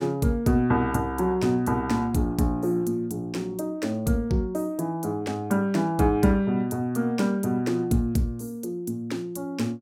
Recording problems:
none

